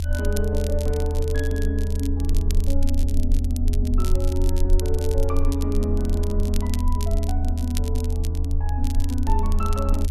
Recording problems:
rumble; below 80 Hz, SNR -5 dB
crackling; vinyl, SNR 11 dB

